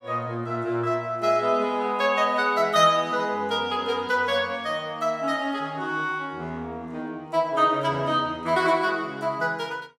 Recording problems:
none

